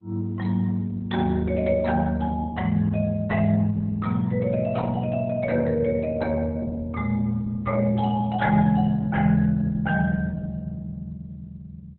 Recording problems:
lossy compression; Opus, log-spectral distance 3 dB, nothing above 3.5 kHz

